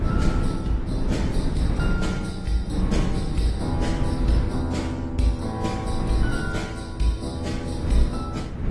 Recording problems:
codec artefacts; AAC, then AAC, log-spectral distance 3 dB
wind noise; below 160 Hz, SNR 1 dB

